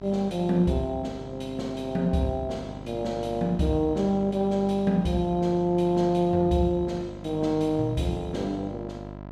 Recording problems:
hum; 50 Hz, harmonics up to 1.7 kHz, SNR 14 dB

